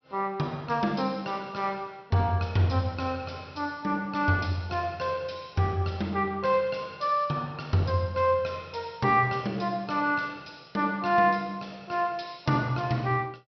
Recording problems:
treble cut off; nothing above 5.8 kHz

